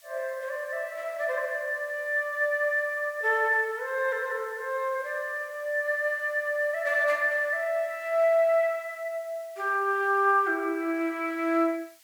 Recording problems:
background hiss; slope +4 dB per octave, SNR 27 dB

